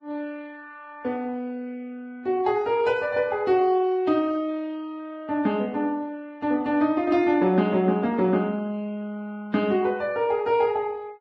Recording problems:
lossy compression; Vorbis, log-spectral distance 2 dB

